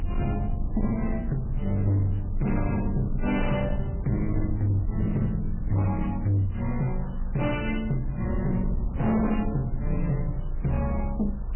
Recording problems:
codec artefacts; MP3, log-spectral distance 4 dB, nothing above 2.7 kHz
distortion; soft clipping, signal-to-distortion ratio 11 dB
rumble; below 76 Hz, strongest tone 28 Hz, SNR 6 dB
wind on the microphone; below 1.1 kHz, SNR 25 dB

